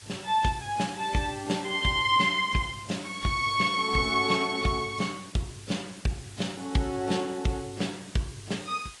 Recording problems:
codec artefacts; AAC, log-spectral distance 8 dB, nothing above 10.4 kHz
background hiss; slope +2 dB per octave, SNR 17 dB

